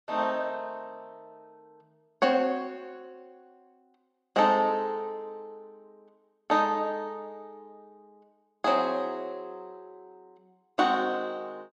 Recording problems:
none

